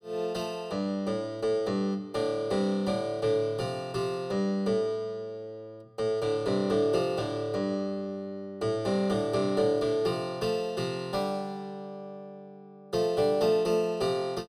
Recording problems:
none

